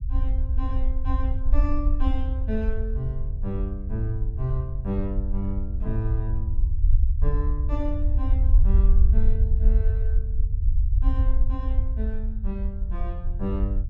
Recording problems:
low-frequency rumble; below 60 Hz, SNR -8 dB

